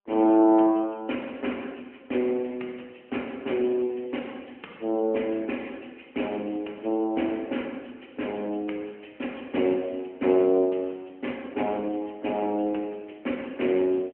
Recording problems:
telephone audio; 220 Hz to 3.1 kHz, AMR-NB

